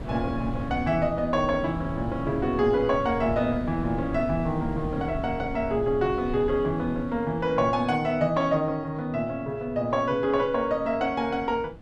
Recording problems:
wind noise; below 240 Hz, SNR 12 dB

